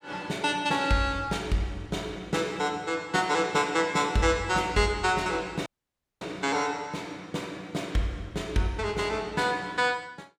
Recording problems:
audio cutting out; at 5.5 s for 0.5 s

